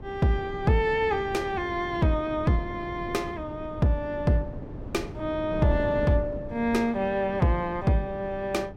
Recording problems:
wind on the microphone; below 310 Hz, SNR 11 dB

